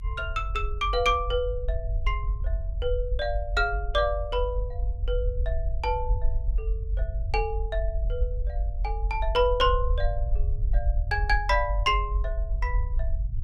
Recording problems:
low-frequency rumble; below 52 Hz, SNR 2 dB

